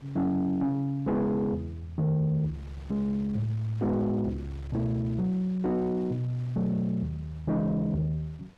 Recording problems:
distortion; soft clipping, signal-to-distortion ratio 11 dB
wind noise; below 1.5 kHz, SNR 25 dB

